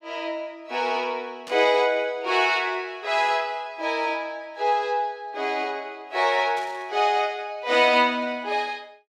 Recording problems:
burst of static; at 1.5 s and at 6.5 s; peak -12 dB vs average level

